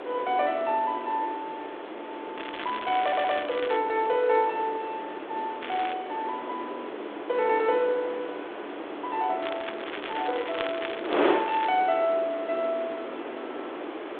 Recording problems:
telephone audio; 300 Hz to 3.6 kHz, G.726
hiss; SNR 28 dB
wind noise; below 1 kHz, SNR 7 dB
crackle; from 2.5 to 4 s, at 5.5 s and from 9.5 to 12 s; loose cable, SNR 10 dB
audio stuttering; at 3 s

